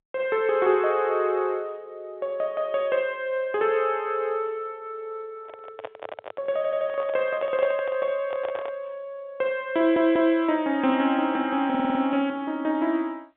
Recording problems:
phone line; 170 Hz to 3.7 kHz, G.711
microphone handling noise; from 5.5 to 9 s; peak -6 dB vs average level
stutter; at 6.5 s, at 10 s and at 12 s

